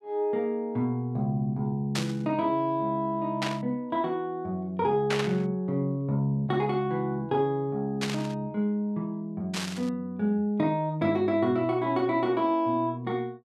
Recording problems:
burst of static; 5 times, first at 2 s; peak +2 dB vs average level

